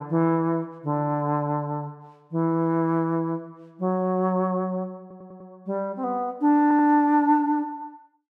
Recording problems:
stutter; at 5 s and at 6.5 s

